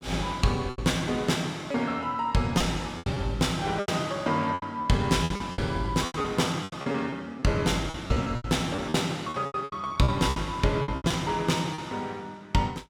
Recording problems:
lost packets; 12% of the sound replaced, filled with repeated pitch periods

